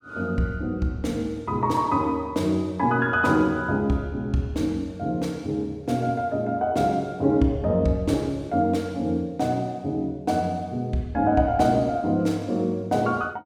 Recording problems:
none

